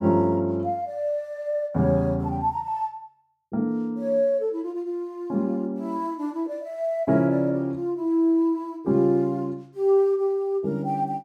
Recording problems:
none

